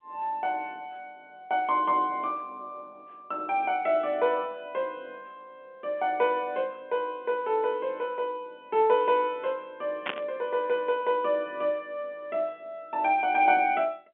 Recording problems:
telephone audio; 130 Hz to 3.5 kHz, G.711
static burst; at 10 s; peak +1 dB vs average level

